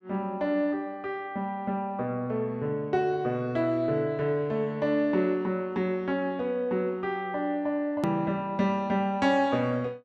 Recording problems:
click at an edit; at 8 s

